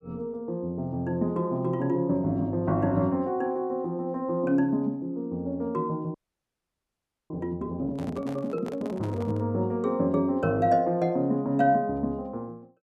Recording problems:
audio freezing; at 6 s for 1 s
handling noise; from 8 to 9.5 s; peak -10 dB vs average level

